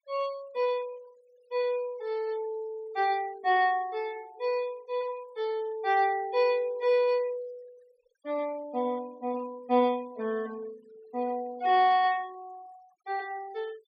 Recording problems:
noise reduction artefacts; signal-to-artefact ratio 26 dB

